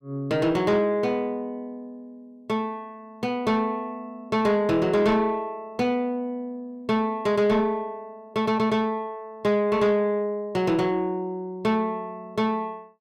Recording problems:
distortion; soft clipping, signal-to-distortion ratio 12 dB

